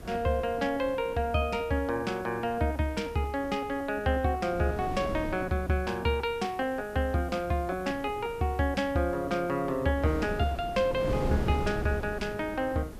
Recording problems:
background hiss; slope -3 dB per octave, SNR 27 dB
wind noise; below 390 Hz, SNR 11 dB

